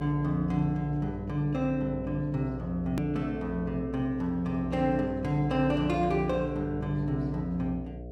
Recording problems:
electrical hum; 60 Hz, harmonics up to 720 Hz, SNR 11 dB
hard cut with a click; at 3 s

